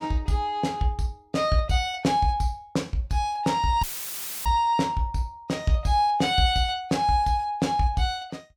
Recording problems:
dropout; at 4 s for 0.5 s; filled with static

